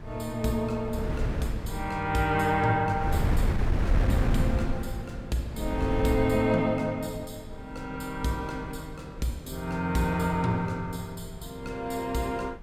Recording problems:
wind noise; below 130 Hz, SNR 2 dB

